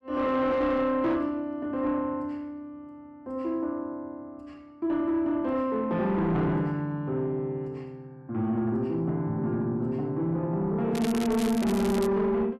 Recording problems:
distortion; soft clipping, signal-to-distortion ratio 11 dB
crackle; from 11 to 12 s; loose cable, SNR 11 dB

